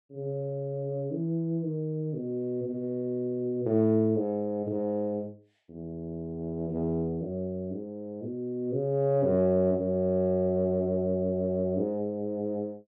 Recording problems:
none

